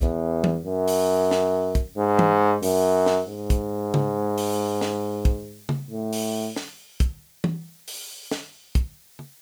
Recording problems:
background hiss; SNR 26 dB

